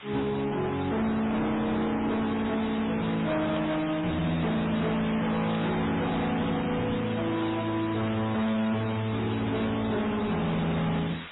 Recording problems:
lossy codec; MP3, then AAC, log-spectral distance 11 dB, nothing above 3.8 kHz
distorted audio; hard clipping, signal-to-distortion ratio 7 dB
background hiss; SNR 13 dB
burst of static; 4 times, first at 3.5 s; peak -11 dB vs average level

